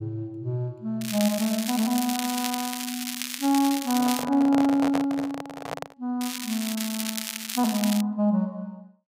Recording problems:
crackle; from 1 to 4 s and from 6 to 8 s; loose cable, SNR 6 dB
microphone handling noise; from 4 to 6 s; peak 0 dB vs average level

